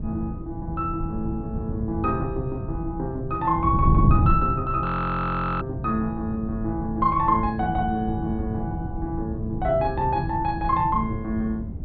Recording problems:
low-pass filter; nothing above 4.4 kHz
wind on the microphone; below 160 Hz, SNR 4 dB
frozen audio; at 5 s for 1 s

